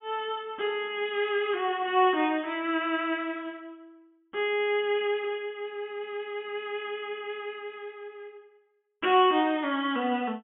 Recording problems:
treble missing; nothing above 3.5 kHz

